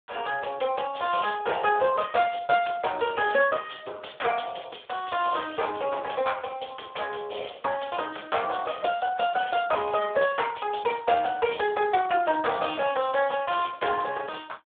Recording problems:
telephone audio; 340 Hz to 3.5 kHz, Speex

